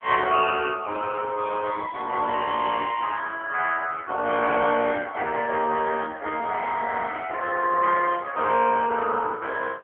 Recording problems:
phone line; 260 Hz to 2.8 kHz, AMR-NB

